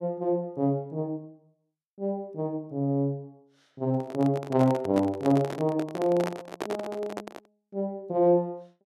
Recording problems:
microphone handling noise; from 4 to 7.5 s; peak -1 dB vs average level

